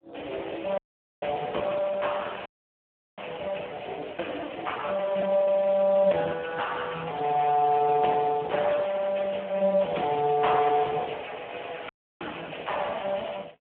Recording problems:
phone line; 260 Hz to 3.3 kHz, Speex
dropout; at 1 s, at 2.5 s for 0.5 s and at 12 s

